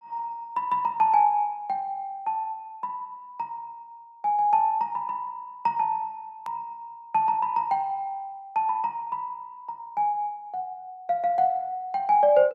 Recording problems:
click at an edit; at 6.5 s

